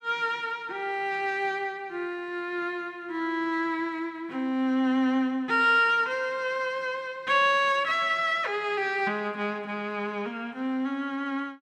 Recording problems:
none

